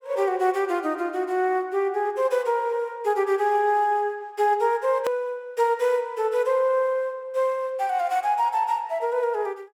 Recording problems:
edit click; at 5 s

